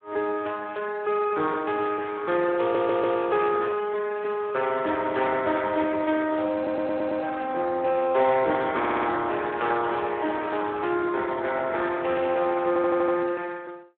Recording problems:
phone line; 280 Hz to 3.5 kHz, Speex
audio stuttering; 4 times, first at 2.5 s

